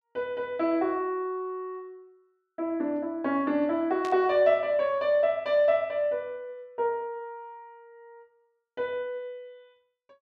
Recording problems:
static burst; at 4 s; peak -10 dB vs average level

